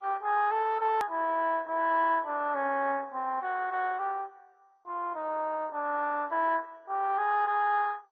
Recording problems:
lossy codec; MP2, then AAC, log-spectral distance 4 dB, nothing above 13.1 kHz
edit click; at 1 s

